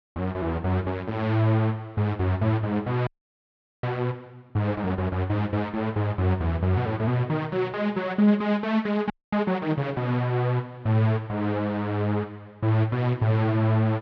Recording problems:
frozen audio; at 3 s for 1 s and at 9 s

